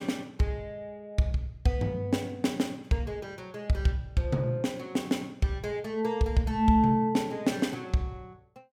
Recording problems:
none

